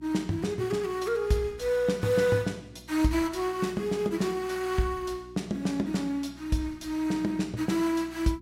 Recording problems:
hum; 60 Hz, harmonics up to 360 Hz, SNR 23 dB

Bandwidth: 16 kHz